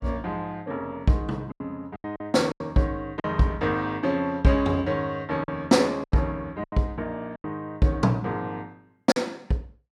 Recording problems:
packet loss; 7% of the sound replaced, filled with silence

